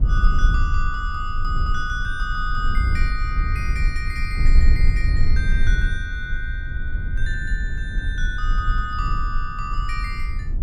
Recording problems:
rumble; below 56 Hz, strongest tone 24 Hz, SNR -5 dB

